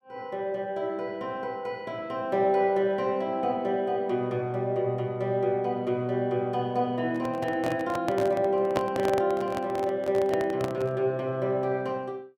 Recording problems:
microphone handling noise; from 7 to 11 s; peak +3 dB vs average level

